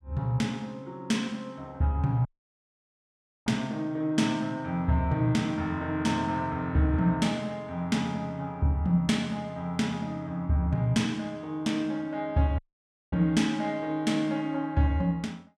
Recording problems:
audio cutting out; at 2.5 s for 1 s and at 13 s for 0.5 s

